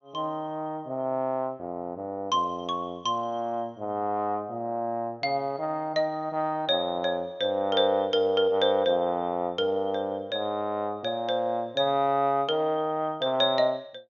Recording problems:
treble cut off; nothing above 6.8 kHz

